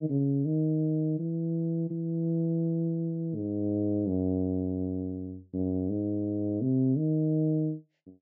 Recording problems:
treble missing; nothing above 8 kHz

